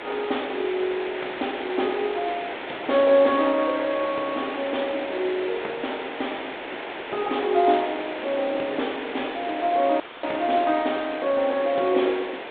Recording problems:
telephone audio; 280 Hz to 3.7 kHz, G.726
hiss; SNR 8 dB
audio cutting out; at 10 s

